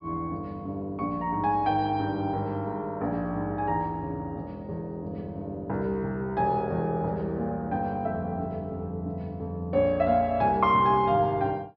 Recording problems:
low-pass filter; nothing above 5.5 kHz

